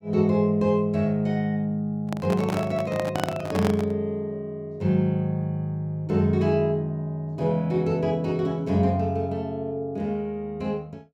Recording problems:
handling noise; from 2 to 4 s; peak +2 dB vs average level

